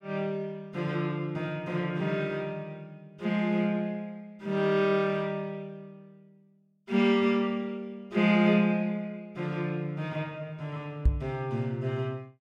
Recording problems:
microphone bump; at 11 s; peak +9 dB vs average level

